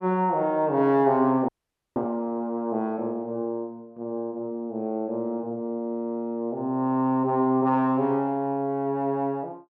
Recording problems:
audio freezing; at 1.5 s

